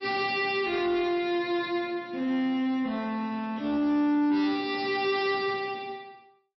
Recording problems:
codec artefacts; MP3, log-spectral distance 2 dB, nothing above 4.8 kHz
distorted audio; soft clipping, signal-to-distortion ratio 11 dB

